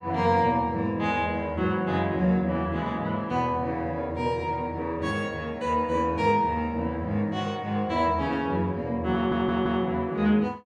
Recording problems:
stutter; at 9 s

